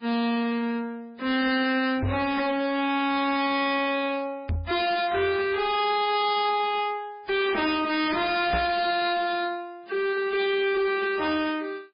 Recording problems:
lossy compression; MP3, then MP3, log-spectral distance 3 dB, nothing above 4.2 kHz
distortion; hard clipping, signal-to-distortion ratio 7 dB
microphone thump; at 2 s, at 4.5 s and at 8.5 s; peak 0 dB vs average level

